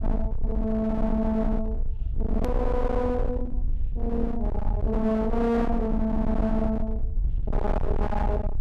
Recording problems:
distortion; hard clipping, signal-to-distortion ratio 8 dB
rumble; below 66 Hz, SNR 3 dB
click at an edit; at 2.5 s

